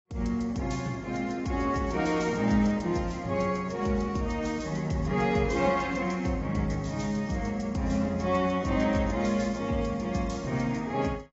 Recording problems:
codec artefacts; AAC, log-spectral distance 3 dB, nothing above 7.3 kHz

